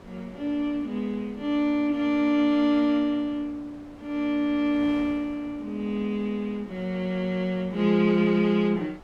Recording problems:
wind noise; below 920 Hz, SNR 23 dB

